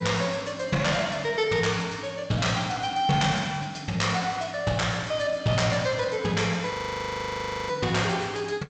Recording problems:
codec artefacts; G.722, log-spectral distance 4 dB, nothing above 7.6 kHz
distortion; soft clipping, signal-to-distortion ratio 12 dB
frozen audio; at 6.5 s for 1 s

